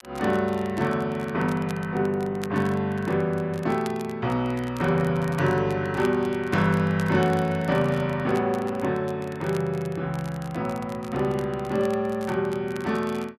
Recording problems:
crackle; vinyl, SNR 21 dB

